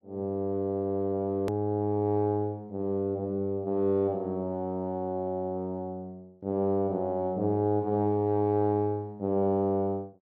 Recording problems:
click at an edit; at 1.5 s

